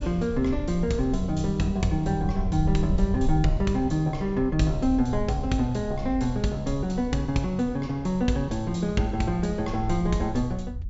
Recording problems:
treble cut off; nothing above 8 kHz
low-frequency rumble; below 66 Hz, SNR 8 dB

